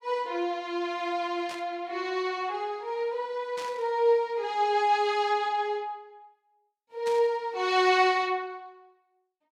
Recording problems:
burst of static; at 1.5 s, at 3.5 s and at 7 s; peak -9 dB vs average level

